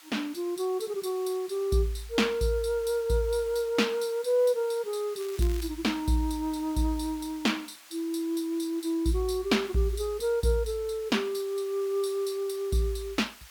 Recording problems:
hiss; SNR 20 dB
crackle; at 5 s; loose cable, SNR 18 dB

